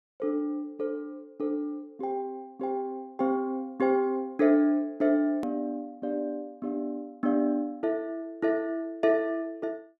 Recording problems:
hard cut with a click; at 5.5 s

